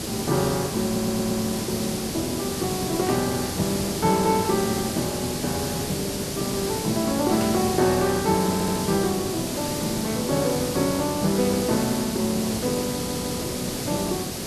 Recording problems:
background hiss; SNR 3 dB
stutter; at 1 s, at 8.5 s and at 13 s
burst of static; at 3 s and at 7.5 s; peak -6 dB vs average level

